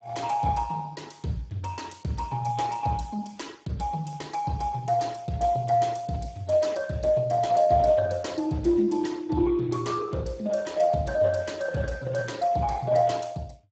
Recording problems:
lossy codec; Speex, log-spectral distance 4 dB, nothing above 7.6 kHz

